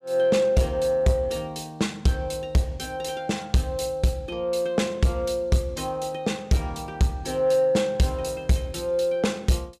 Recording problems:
distortion; soft clipping, signal-to-distortion ratio 12 dB

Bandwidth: 15 kHz